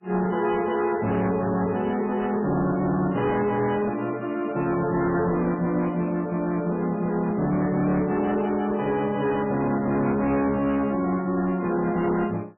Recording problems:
lossy codec; MP3, log-spectral distance 3 dB, nothing above 2.5 kHz
distorted audio; hard clipping, signal-to-distortion ratio 11 dB

